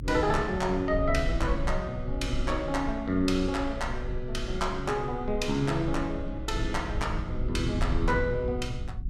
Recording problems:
rumble; below 76 Hz, strongest tone 22 Hz, SNR 6 dB

